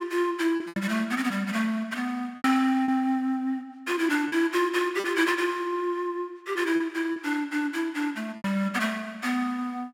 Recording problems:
packet loss; 5% of the sound replaced, filled with repeated pitch periods

